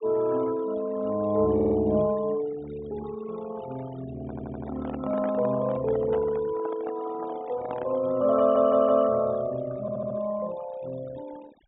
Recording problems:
treble missing; nothing above 4 kHz
noise reduction artefacts; signal-to-artefact ratio 18 dB
audio stuttering; 4 times, first at 1.5 s
microphone handling noise; from 4 to 8 s; peak -5 dB vs average level

